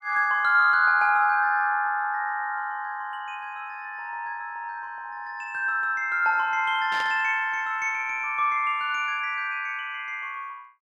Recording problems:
burst of static; at 7 s; peak -8 dB vs average level

